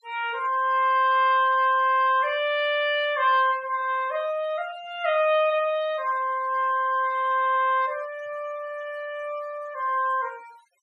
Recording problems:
denoising artefacts; signal-to-artefact ratio 25 dB

